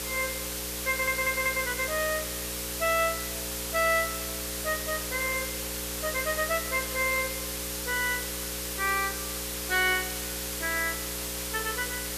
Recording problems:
hum; 60 Hz, harmonics up to 540 Hz, SNR 11 dB
background hiss; slope +1 dB per octave, SNR 3 dB
stutter; at 1 s

